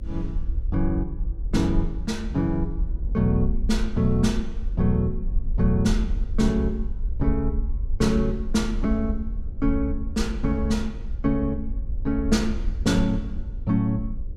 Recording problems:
electrical hum; 50 Hz, harmonics up to 550 Hz, SNR 27 dB
rumble; below 52 Hz, SNR 6 dB
wind noise; below 200 Hz, SNR 18 dB

